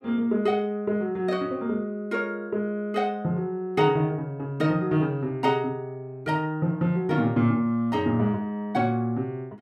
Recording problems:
none

